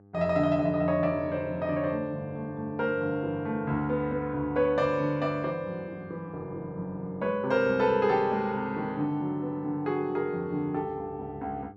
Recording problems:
electrical hum; 50 Hz, harmonics up to 1.2 kHz, SNR 23 dB

